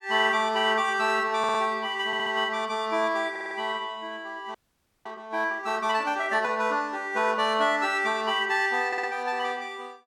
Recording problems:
audio stuttering; 4 times, first at 1.5 s
audio freezing; at 4.5 s for 0.5 s

